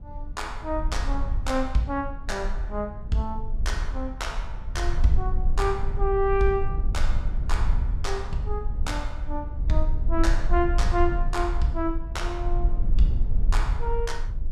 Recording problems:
low-frequency rumble; below 50 Hz, SNR 0 dB

